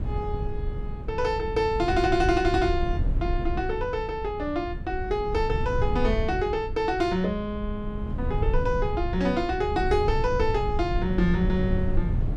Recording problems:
rumble; below 96 Hz, SNR 4 dB

